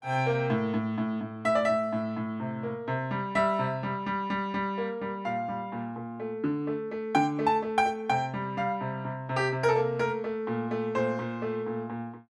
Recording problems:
none

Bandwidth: 14.5 kHz